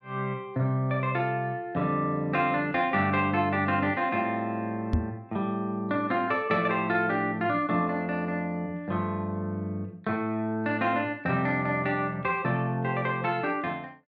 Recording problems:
knock on the microphone; at 5 s; peak +6 dB vs average level

